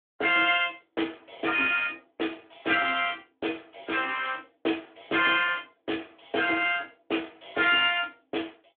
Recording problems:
phone line; 240 Hz to 3.5 kHz, Speex

